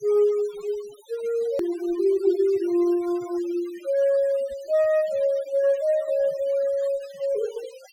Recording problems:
noise reduction artefacts; signal-to-artefact ratio 22 dB
hard cut with a click; at 1.5 s

